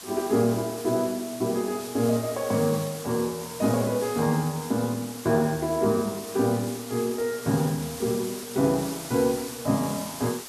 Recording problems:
hiss; slope -1 dB per octave, SNR 12 dB

